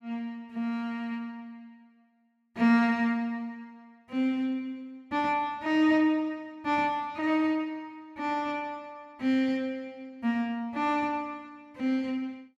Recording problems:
none

